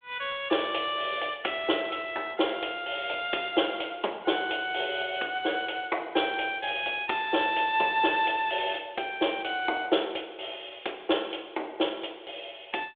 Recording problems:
telephone audio; 260 Hz to 3.6 kHz, G.726

